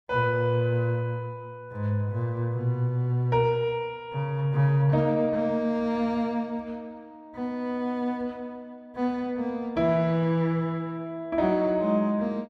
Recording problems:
none

